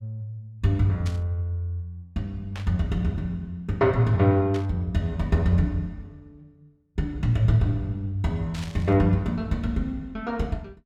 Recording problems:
static burst; 4 times, first at 1 s; peak -10 dB vs average level

